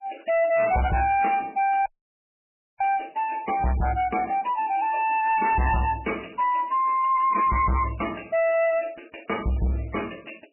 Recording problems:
lossy codec; MP3, log-spectral distance 7 dB, nothing above 2.4 kHz
distorted audio; soft clipping, signal-to-distortion ratio 7 dB
audio cutting out; at 2 s for 1 s

